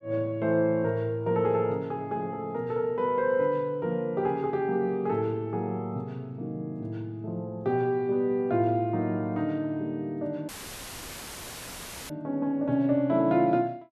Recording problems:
audio cutting out; at 10 s for 1.5 s; filled with static

